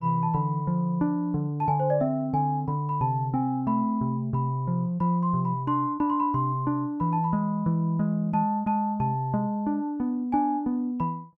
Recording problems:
none

